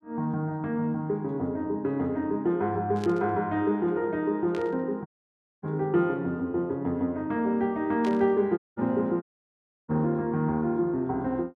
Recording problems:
static burst; at 3 s, at 4.5 s and at 8 s; peak -10 dB vs average level
audio cutting out; at 5 s for 0.5 s, at 8.5 s and at 9 s for 0.5 s

